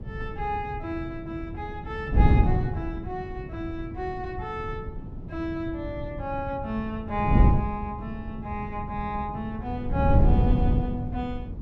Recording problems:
wind noise; below 150 Hz, SNR -3 dB

